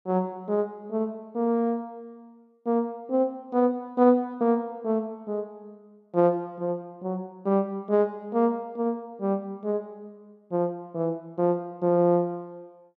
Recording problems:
none

